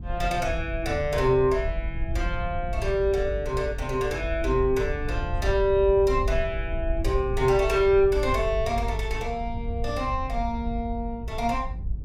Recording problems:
low-frequency rumble; below 76 Hz, SNR 7 dB

